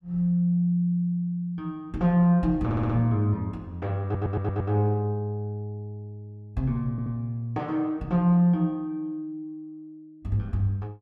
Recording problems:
audio stuttering; at 2.5 s, at 4 s and at 7 s

